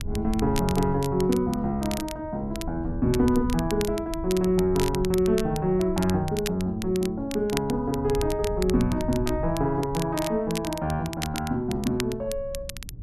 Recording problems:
rumble; below 100 Hz, SNR 11 dB
crackle; vinyl, SNR 13 dB

